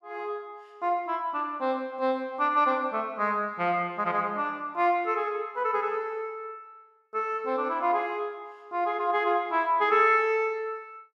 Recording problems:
none

